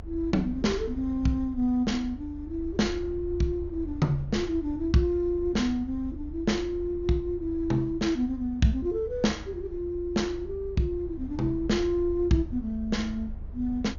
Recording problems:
low-pass filter; nothing above 7 kHz
rumble; below 78 Hz, SNR 13 dB

